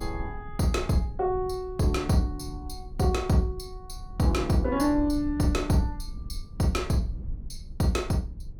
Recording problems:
low-frequency rumble; below 82 Hz, SNR 13 dB

